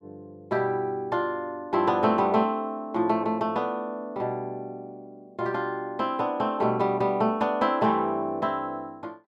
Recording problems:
none

